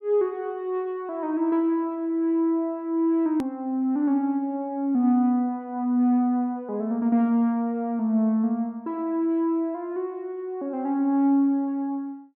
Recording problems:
click at an edit; at 3.5 s

